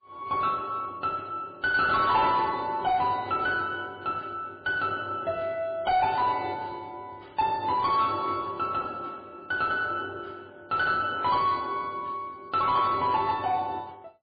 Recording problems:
lossy compression; MP3, log-spectral distance 2 dB, nothing above 4.5 kHz
distortion; soft clipping, signal-to-distortion ratio 11 dB

